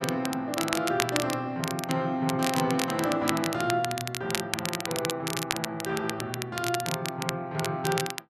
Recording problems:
crackling; vinyl, SNR 4 dB

